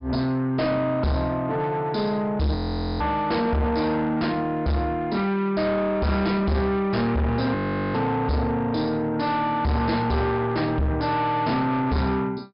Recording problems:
treble cut off; nothing above 5.5 kHz
distorted audio; soft clipping, signal-to-distortion ratio 7 dB
audio freezing; at 2.5 s and at 7.5 s

